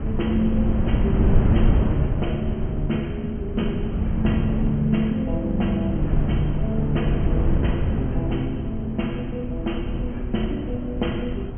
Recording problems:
treble cut off; nothing above 3.2 kHz
wind on the microphone; below 150 Hz, SNR 0 dB

